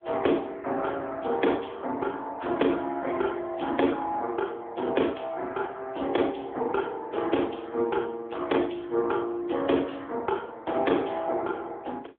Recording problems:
telephone audio; 240 Hz to 3.4 kHz, AMR-NB

